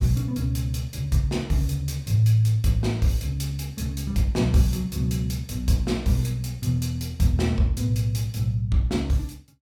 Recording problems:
none

